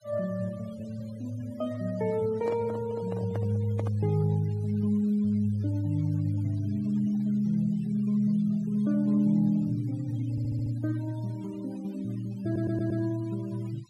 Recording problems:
denoising artefacts; signal-to-artefact ratio 24 dB
microphone handling noise; from 2.5 to 4 s; peak -4 dB vs average level
stutter; at 10 s and at 12 s

